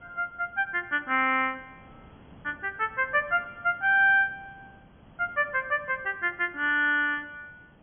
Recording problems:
low-pass filter; nothing above 3.4 kHz
hiss; SNR 28 dB

